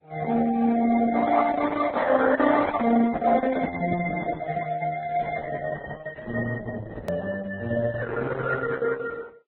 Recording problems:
codec artefacts; Opus, then Vorbis, log-spectral distance 4 dB
hard cut with a click; at 7 s

